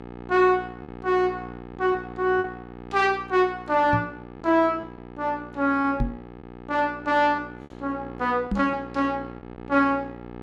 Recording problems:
electrical hum; 60 Hz, harmonics up to 2.2 kHz, SNR 16 dB
lost packets; 3% of the sound replaced, filled with repeated pitch periods
knock on the microphone; at 4 s, at 6 s and at 8.5 s; peak +2 dB vs average level

